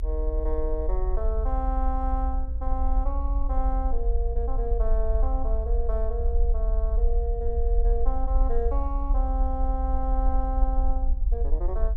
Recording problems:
low-frequency rumble; below 56 Hz, SNR -5 dB

